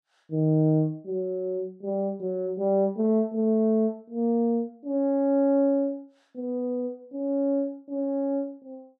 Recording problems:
none

